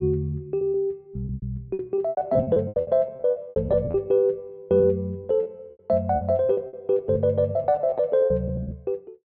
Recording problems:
lost packets; 17% of the sound replaced, filled with repeated pitch periods

